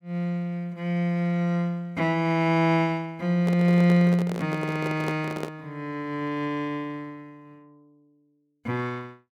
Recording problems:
microphone handling noise; from 3.5 to 5.5 s; peak -3 dB vs average level

